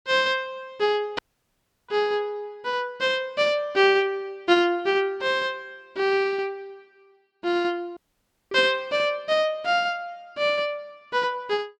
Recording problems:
dropout; at 1 s for 0.5 s and at 8 s for 0.5 s

